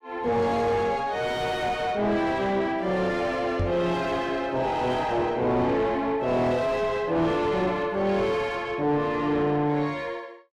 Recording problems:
distorted audio; soft clipping, signal-to-distortion ratio 7 dB
microphone bump; at 3.5 s; peak +2 dB vs average level

